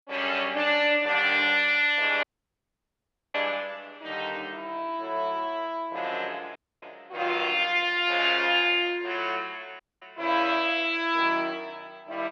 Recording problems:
audio cutting out; at 2 s for 1 s, at 6.5 s and at 10 s

